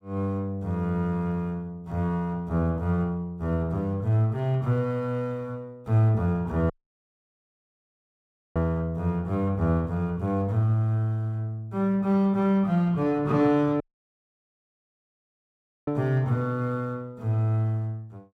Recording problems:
audio cutting out; at 6.5 s for 2 s and at 14 s for 2 s

